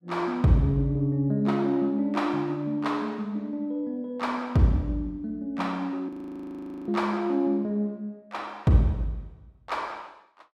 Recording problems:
audio freezing; at 6 s for 1 s

